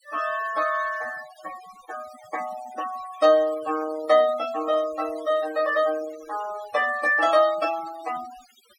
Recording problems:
denoising artefacts; signal-to-artefact ratio 18 dB

